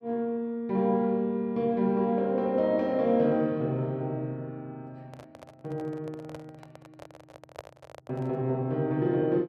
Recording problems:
microphone handling noise; from 5 to 8.5 s; peak -8 dB vs average level

